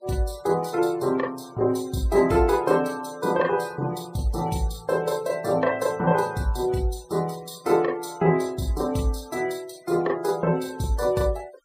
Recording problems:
denoising artefacts; signal-to-artefact ratio 22 dB

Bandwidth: 15.5 kHz